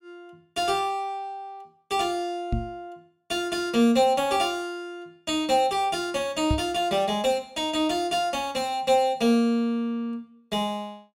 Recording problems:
microphone bump; at 2.5 s and at 6.5 s; peak +3 dB vs average level

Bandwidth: 16 kHz